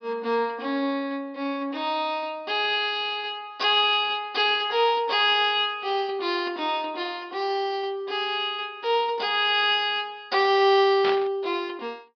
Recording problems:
treble cut off; nothing above 5.5 kHz
burst of static; at 11 s; peak -2 dB vs average level

